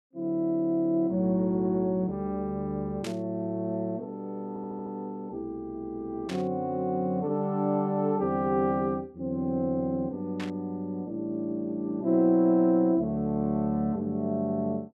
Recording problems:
burst of static; at 3 s, at 6.5 s and at 10 s; peak -7 dB vs average level
stutter; at 4.5 s

